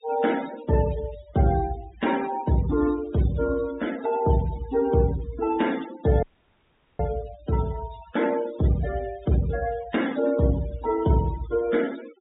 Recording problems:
treble cut off; nothing above 4 kHz
noise reduction artefacts; signal-to-artefact ratio 16 dB
audio cutting out; at 6 s for 1 s

